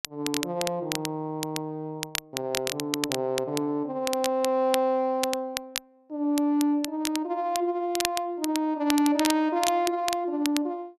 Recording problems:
crackle; vinyl, SNR 7 dB

